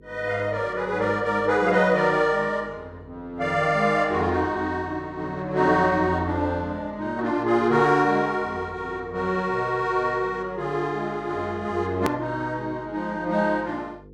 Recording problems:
hum; 50 Hz, harmonics up to 500 Hz, SNR 24 dB
hard cut with a click; at 12 s

